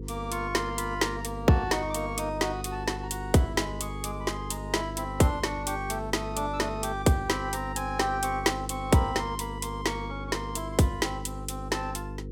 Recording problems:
mains hum; 50 Hz, harmonics up to 500 Hz, SNR 9 dB

